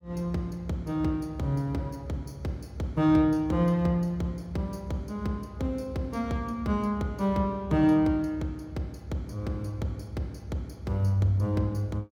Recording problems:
none

